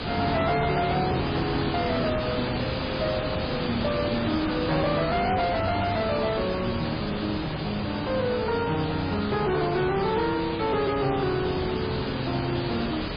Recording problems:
lossy compression; MP3, log-spectral distance 10 dB, nothing above 4.2 kHz
distorted audio; soft clipping, signal-to-distortion ratio 10 dB
background hiss; SNR 3 dB

